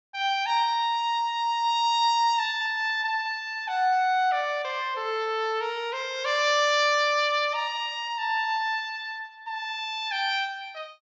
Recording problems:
treble missing; nothing above 8 kHz

